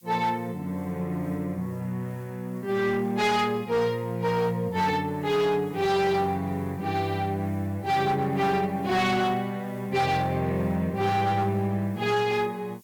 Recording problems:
distorted audio; hard clipping, signal-to-distortion ratio 12 dB
hiss; slope +4 dB per octave, SNR 29 dB

